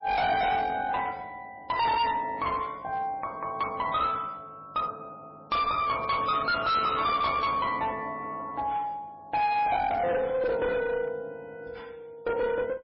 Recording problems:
lossy compression; MP3, log-spectral distance 2 dB, nothing above 4.8 kHz
distortion; hard clipping, uneven, signal-to-distortion ratio 7 dB

